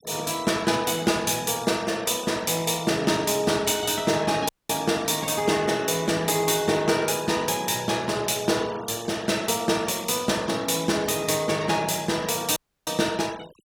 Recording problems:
noise reduction artefacts; signal-to-artefact ratio 20 dB
audio cutting out; at 4.5 s and at 13 s

